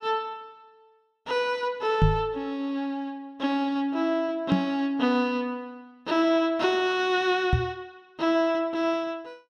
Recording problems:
microphone thump; at 2 s, at 4.5 s and at 7.5 s; peak +8 dB vs average level

